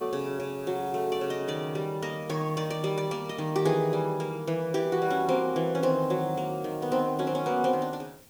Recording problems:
hiss; slope -3 dB per octave, SNR 24 dB

